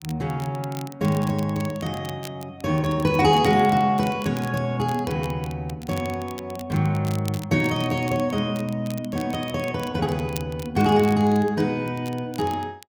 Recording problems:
crackle; vinyl, SNR 19 dB

